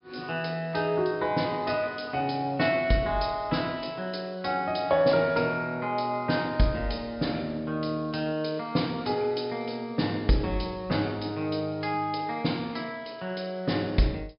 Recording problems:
treble missing; nothing above 5.5 kHz

